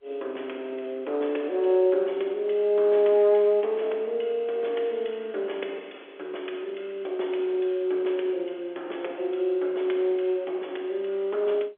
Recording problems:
phone line; 300 Hz to 3.5 kHz, G.711

